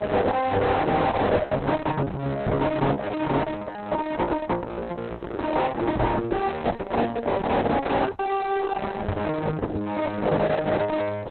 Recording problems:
lossy codec; Opus, log-spectral distance 4 dB, nothing above 4 kHz
distorted audio; soft clipping, signal-to-distortion ratio 5 dB
background hiss; SNR 26 dB
packet loss; 3% of the sound replaced, filled with the last packet
microphone bump; at 2.5 s, at 6 s and at 9 s; peak +7 dB vs average level

